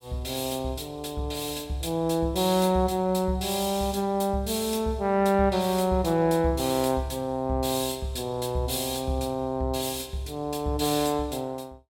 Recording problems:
none

